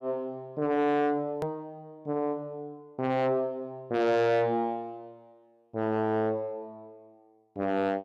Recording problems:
distortion; soft clipping, signal-to-distortion ratio 7 dB
click at an edit; at 1.5 s

